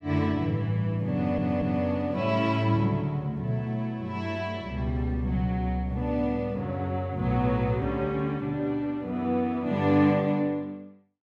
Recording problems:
stutter; at 1 s

